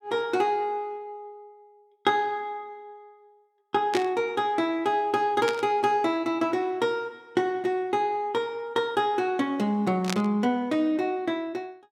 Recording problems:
burst of static; at 4 s, at 5.5 s and at 10 s; peak -1 dB vs average level

